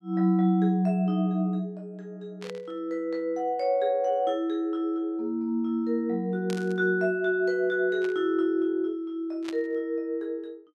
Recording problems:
burst of static; 4 times, first at 2.5 s; peak -9 dB vs average level

